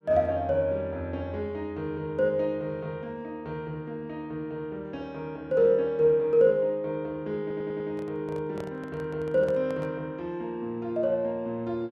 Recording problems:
audio stuttering; at 7.5 s
handling noise; from 8 to 10 s; peak -8 dB vs average level

